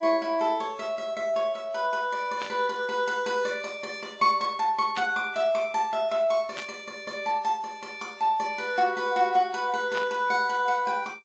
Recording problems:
lossy compression; MP3, then G.722, log-spectral distance 2 dB
burst of static; 4 times, first at 2.5 s; peak -4 dB vs average level

